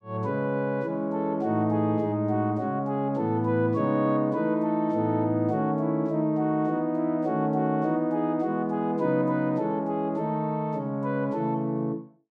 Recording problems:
none

